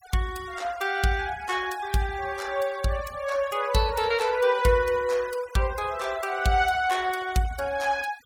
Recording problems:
noise reduction artefacts; signal-to-artefact ratio 20 dB

